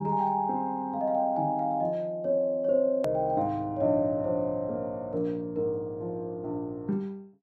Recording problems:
edit click; at 3 s

